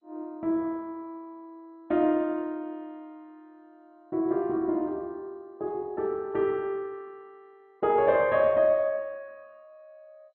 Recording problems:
lossy codec; MP2, log-spectral distance 2 dB

